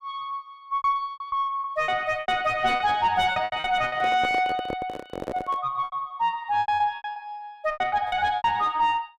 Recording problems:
distorted audio; soft clipping, signal-to-distortion ratio 9 dB
lost packets; 14% of the sound replaced, filled with repeated pitch periods
microphone handling noise; from 4 to 5.5 s; peak -2 dB vs average level

